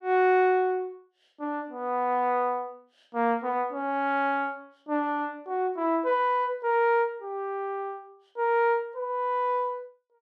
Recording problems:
none

